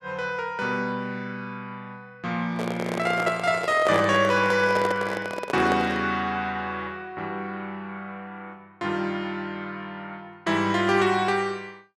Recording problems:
microphone handling noise; from 2.5 to 6 s; peak +1 dB vs average level

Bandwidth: 12.5 kHz